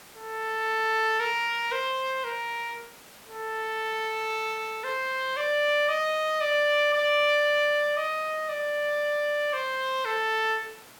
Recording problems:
background hiss; slope -2 dB per octave, SNR 22 dB

